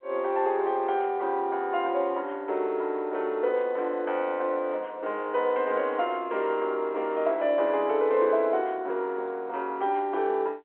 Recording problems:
phone line; 320 Hz to 3.6 kHz, G.711

